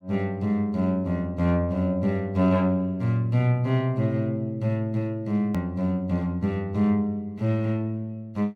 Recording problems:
hard cut with a click; at 5.5 s

